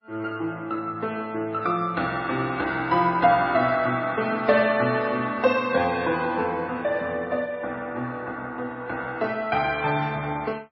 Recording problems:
codec artefacts; MP3, log-spectral distance 2 dB, nothing above 5.5 kHz

